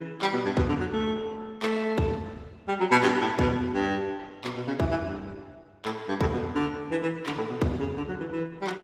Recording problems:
lossy codec; Opus, log-spectral distance 3 dB, nothing above 18.3 kHz

